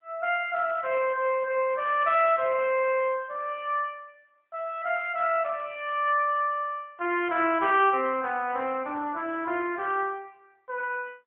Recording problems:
phone line; 280 Hz to 3.3 kHz, AMR-NB

